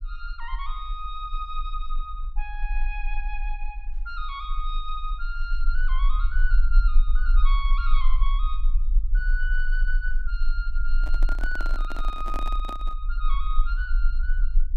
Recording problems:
low-frequency rumble; below 36 Hz, strongest tone 20 Hz, SNR -6 dB
handling noise; from 11 to 13 s; peak +1 dB vs average level

